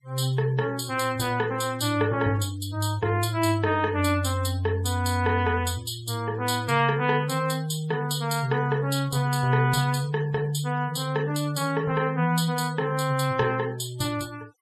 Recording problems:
noise reduction artefacts; signal-to-artefact ratio 22 dB

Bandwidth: 13.5 kHz